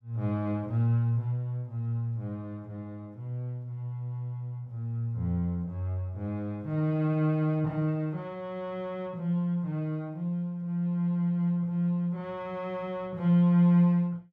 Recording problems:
none

